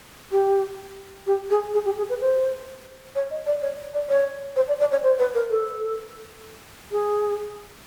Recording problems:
background hiss; slope -2 dB per octave, SNR 22 dB

